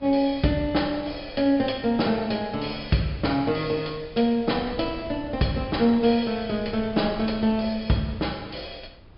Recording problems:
low-pass filter; nothing above 5.5 kHz
wind noise; below 180 Hz, SNR 20 dB

